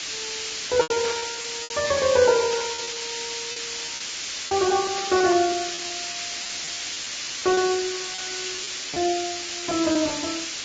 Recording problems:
lossy compression; Vorbis, log-spectral distance 22 dB
background hiss; SNR 5 dB
lost packets; 11% of the sound replaced, filled with repeated pitch periods
burst of static; 4 times, first at 1 s; peak -6 dB vs average level

